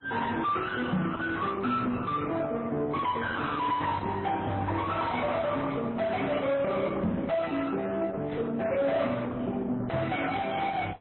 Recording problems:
codec artefacts; Opus, then MP3, log-spectral distance 4 dB, nothing above 4 kHz
distorted audio; soft clipping, signal-to-distortion ratio 6 dB
microphone thump; at 1 s, at 7 s and at 10 s; peak +8 dB vs average level

